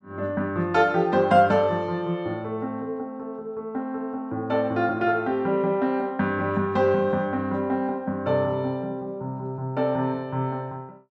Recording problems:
none

